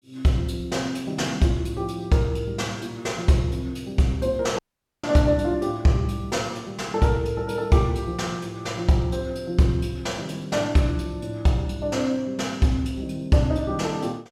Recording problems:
dropout; at 4.5 s

